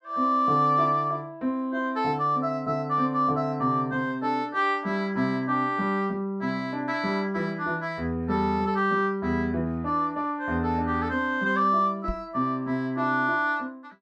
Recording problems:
microphone thump; at 12 s; peak -3 dB vs average level

